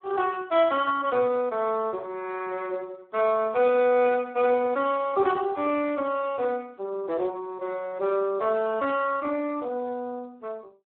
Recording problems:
phone line; 260 Hz to 3.6 kHz, Speex

